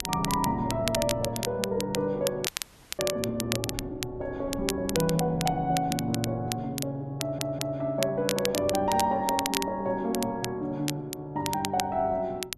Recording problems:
wind noise; below 280 Hz, SNR 16 dB
crackling; vinyl, SNR 6 dB
audio freezing; at 2.5 s for 0.5 s
audio stuttering; at 7 s

